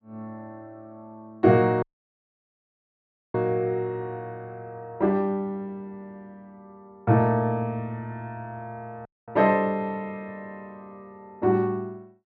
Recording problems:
audio cutting out; at 2 s for 1.5 s and at 9 s

